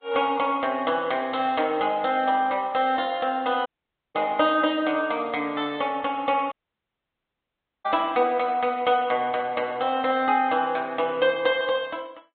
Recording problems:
low-pass filter; nothing above 4 kHz
lossy compression; Vorbis, log-spectral distance 3 dB
dropout; at 3.5 s and at 6.5 s for 1.5 s

